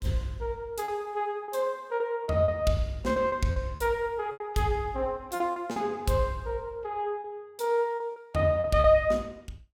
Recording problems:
packet loss; 8% of the sound replaced, filled with repeated pitch periods

